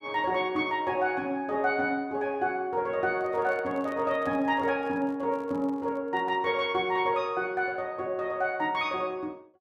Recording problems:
microphone handling noise; from 3 to 6.5 s; peak -11 dB vs average level

